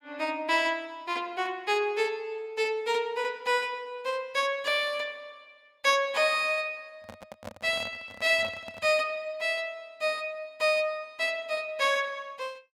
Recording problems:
handling noise; from 7 to 9 s; peak -8 dB vs average level

